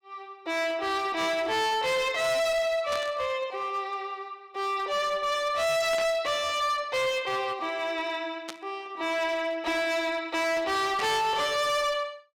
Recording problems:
distortion; hard clipping, signal-to-distortion ratio 8 dB
static burst; 4 times, first at 3 s; peak -5 dB vs average level

